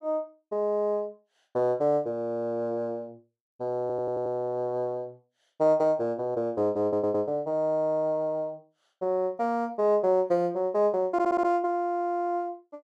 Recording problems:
audio stuttering; 4 times, first at 4 s

